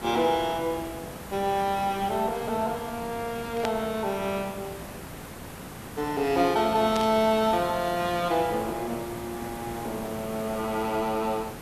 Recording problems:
background hiss; slope -5 dB per octave, SNR 12 dB
static burst; at 3.5 s and at 7 s; peak -2 dB vs average level

